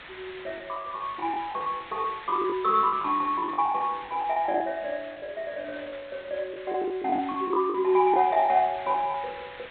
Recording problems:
treble cut off; nothing above 4 kHz
background hiss; SNR 17 dB
lost packets; 13% of the sound replaced, filled with the last packet

